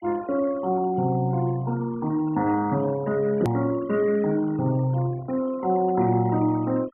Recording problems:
treble cut off; nothing above 3.2 kHz
denoising artefacts; signal-to-artefact ratio 20 dB
edit click; at 3.5 s

